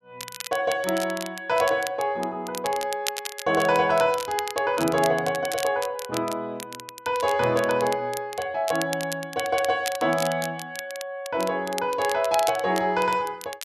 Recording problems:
crackle; vinyl, SNR 11 dB

